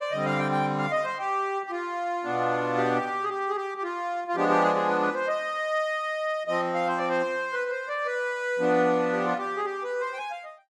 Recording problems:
none

